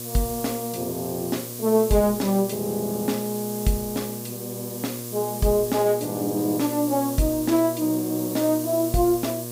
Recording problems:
electrical hum; 60 Hz, harmonics up to 1.2 kHz, SNR 12 dB
background hiss; slope +4 dB per octave, SNR 10 dB

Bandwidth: 15.5 kHz